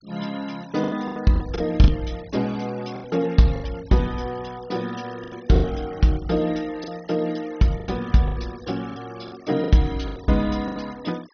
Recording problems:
low-pass filter; nothing above 6.3 kHz
denoising artefacts; signal-to-artefact ratio 22 dB
lost packets; 10% of the sound replaced, filled with the last packet

